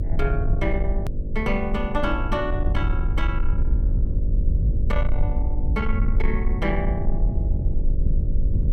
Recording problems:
distortion; soft clipping, signal-to-distortion ratio 10 dB
hum; 50 Hz, harmonics up to 600 Hz, SNR 7 dB
rumble; below 62 Hz, SNR -3 dB
edit click; at 1 s

